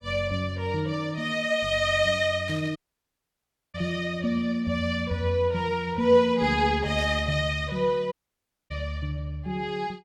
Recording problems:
burst of static; at 2.5 s and at 7 s; peak -12 dB vs average level
audio cutting out; at 3 s for 1 s and at 8 s for 0.5 s

